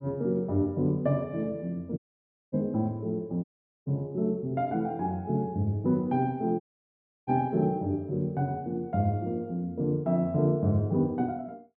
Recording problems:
audio cutting out; at 2 s for 0.5 s, at 3.5 s and at 6.5 s for 0.5 s

